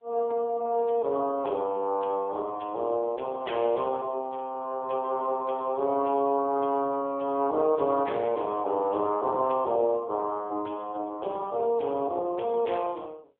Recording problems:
telephone audio; 280 Hz to 3.4 kHz, AMR-NB

